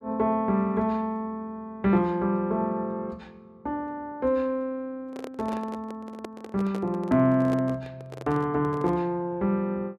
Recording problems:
handling noise; from 5 to 9 s; peak -4 dB vs average level

